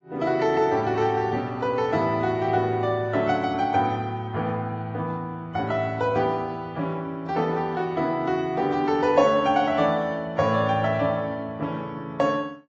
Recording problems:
lossy compression; AAC, log-spectral distance 2 dB, nothing above 6.5 kHz

